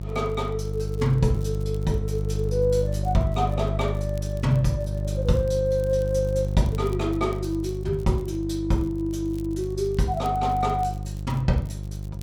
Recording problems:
hum; 50 Hz, harmonics up to 550 Hz, SNR 4 dB
crackling; vinyl, SNR 28 dB

